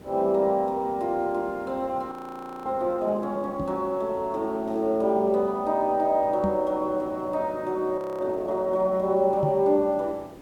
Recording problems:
hiss; slope -8 dB per octave, SNR 21 dB
audio freezing; at 2 s for 0.5 s and at 8 s
knock on the microphone; at 3.5 s, at 6.5 s and at 9.5 s; peak +1 dB vs average level

